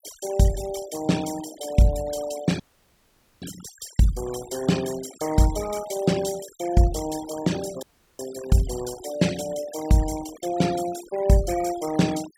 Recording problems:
denoising artefacts; signal-to-artefact ratio 16 dB
audio cutting out; at 2.5 s for 1 s and at 8 s

